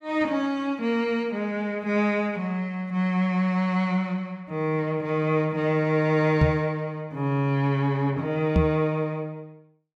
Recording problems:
knock on the microphone; at 6.5 s and at 8.5 s; peak +8 dB vs average level

